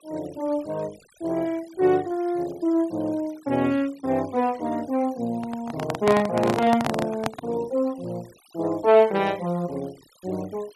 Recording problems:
noise reduction artefacts; signal-to-artefact ratio 24 dB
handling noise; from 5.5 to 7.5 s; peak +3 dB vs average level

